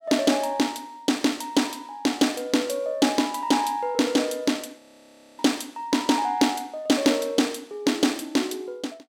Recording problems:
audio freezing; at 5 s for 0.5 s

